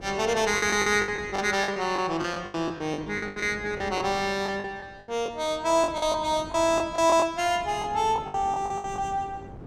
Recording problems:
wind on the microphone; below 420 Hz, SNR 19 dB
packet loss; 14% of the sound replaced, filled with the last packet

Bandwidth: 16.5 kHz